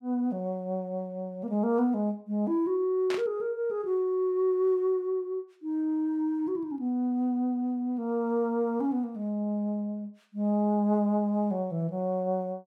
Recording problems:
burst of static; at 3 s; peak -3 dB vs average level

